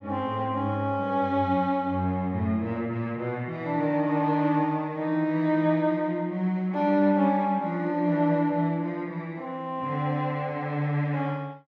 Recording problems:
none

